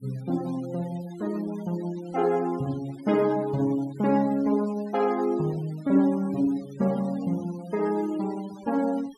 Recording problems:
denoising artefacts; signal-to-artefact ratio 22 dB

